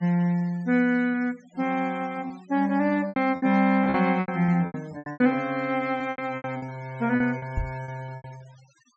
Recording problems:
treble cut off; nothing above 8 kHz
noise reduction artefacts; signal-to-artefact ratio 25 dB
lost packets; 13% of the sound replaced, filled with repeated pitch periods
microphone thump; at 7.5 s; peak 0 dB vs average level

